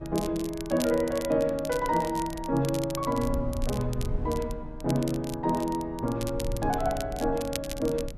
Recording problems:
wind noise; below 90 Hz, SNR 12 dB
crackling; vinyl, SNR 13 dB

